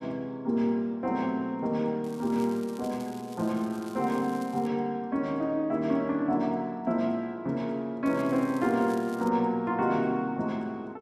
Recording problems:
crackling; from 2 to 4.5 s and from 8 to 9.5 s; loose cable, SNR 23 dB

